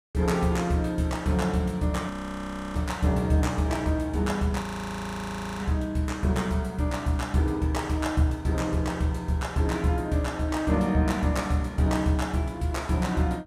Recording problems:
frozen audio; at 2 s for 0.5 s and at 4.5 s for 1 s

